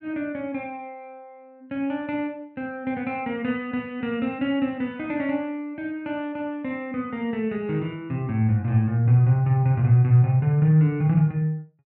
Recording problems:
none

